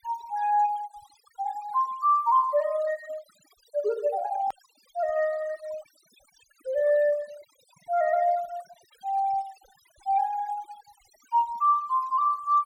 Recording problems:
noise reduction artefacts; signal-to-artefact ratio 22 dB
click at an edit; at 4.5 s

